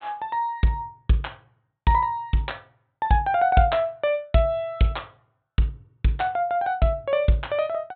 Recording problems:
treble cut off; nothing above 4 kHz

